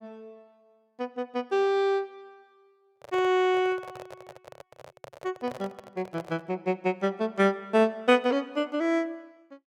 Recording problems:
microphone handling noise; from 3 to 6.5 s; peak -10 dB vs average level

